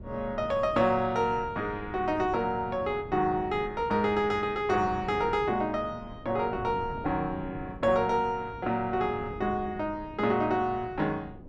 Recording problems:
wind on the microphone; below 290 Hz, SNR 15 dB

